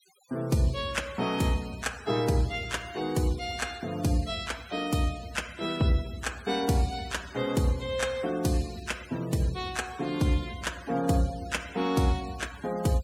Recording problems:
denoising artefacts; signal-to-artefact ratio 18 dB

